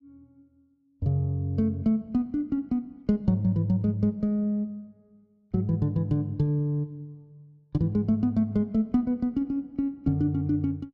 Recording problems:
none

